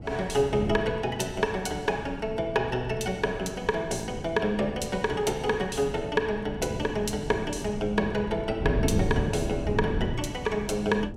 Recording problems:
wind on the microphone; below 240 Hz, SNR 7 dB

